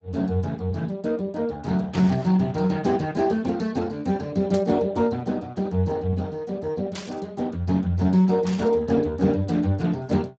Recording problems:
codec artefacts; Speex, log-spectral distance 3 dB
static burst; 4 times, first at 2 s; peak -7 dB vs average level

